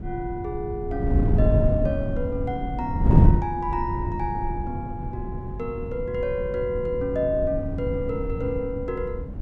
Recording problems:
wind noise; below 160 Hz, SNR -1 dB

